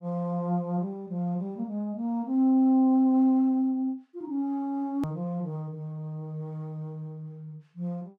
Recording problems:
click at an edit; at 5 s

